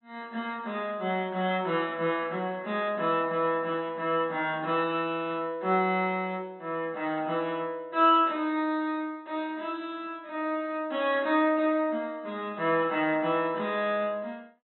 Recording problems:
treble missing; nothing above 4 kHz

